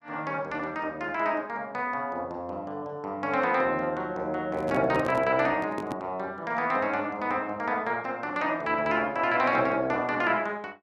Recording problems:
handling noise; from 4.5 to 6 s; peak -3 dB vs average level

